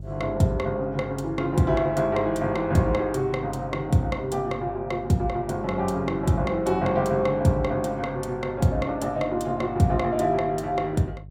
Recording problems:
electrical hum; 50 Hz, harmonics up to 400 Hz, SNR 16 dB

